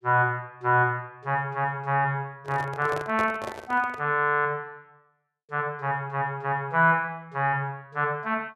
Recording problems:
microphone handling noise; from 2.5 to 4 s; peak -4 dB vs average level

